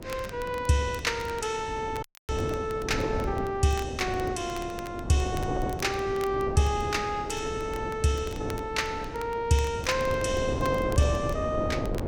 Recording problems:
hum; 50 Hz, harmonics up to 450 Hz, SNR 24 dB
wind noise; below 480 Hz, SNR 7 dB
crackle; vinyl, SNR 20 dB
audio cutting out; at 2 s

